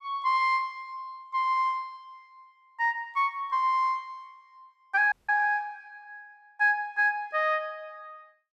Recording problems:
audio cutting out; at 5 s

